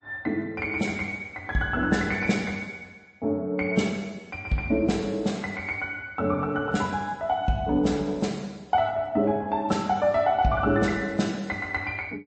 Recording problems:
lossy compression; MP3, log-spectral distance 2 dB, nothing above 8 kHz

